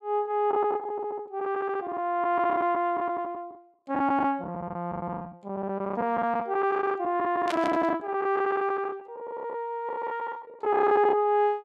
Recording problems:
lost packets; 14% of the sound replaced, filled with the last packet
burst of static; at 7.5 s; peak -2 dB vs average level

